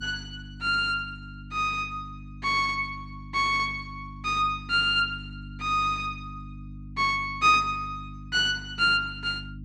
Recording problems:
electrical hum; 50 Hz, harmonics up to 300 Hz, SNR 17 dB

